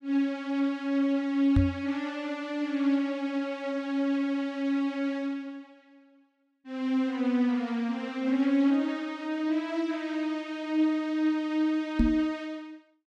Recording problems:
knock on the microphone; at 1.5 s and at 12 s; peak +7 dB vs average level

